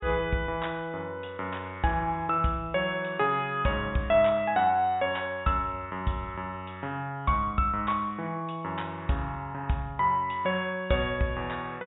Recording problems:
treble missing; nothing above 4 kHz

